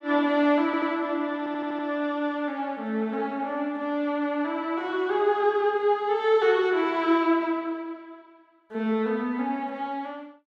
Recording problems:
stutter; at 0.5 s and at 1.5 s

